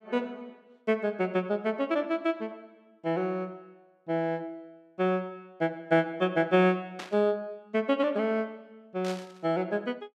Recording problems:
static burst; at 7 s and at 9 s; peak -6 dB vs average level

